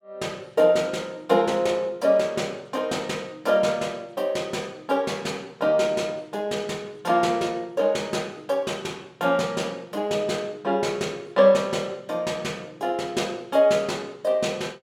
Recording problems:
none

